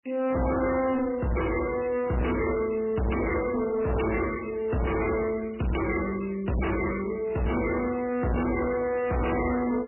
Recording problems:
lossy codec; MP3, log-spectral distance 7 dB, nothing above 2.9 kHz
distorted audio; hard clipping, signal-to-distortion ratio 7 dB

